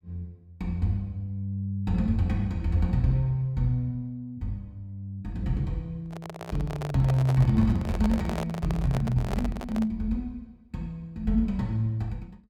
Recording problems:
microphone handling noise; from 6 to 10 s; peak -2 dB vs average level

